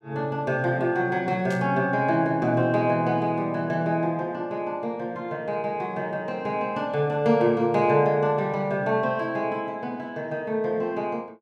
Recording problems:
static burst; at 1.5 s; peak -11 dB vs average level

